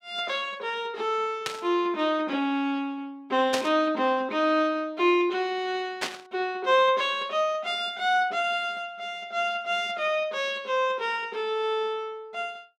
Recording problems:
burst of static; at 1.5 s, at 3.5 s and at 6 s; peak +2 dB vs average level

